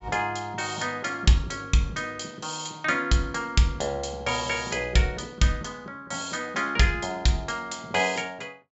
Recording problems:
low-pass filter; nothing above 7.5 kHz

